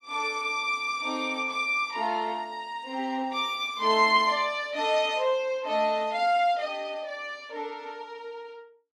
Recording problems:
none

